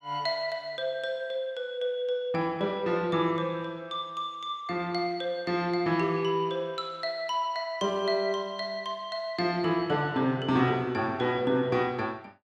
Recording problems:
none

